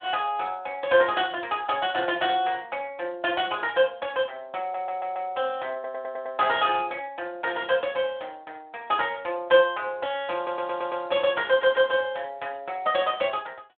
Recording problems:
telephone audio; 300 Hz to 3.5 kHz, Speex
audio stuttering; 4 times, first at 4.5 s

